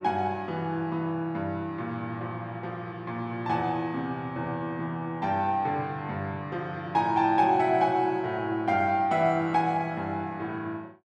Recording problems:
none

